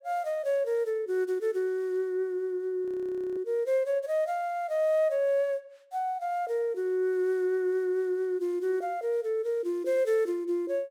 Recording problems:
audio freezing; at 3 s for 0.5 s

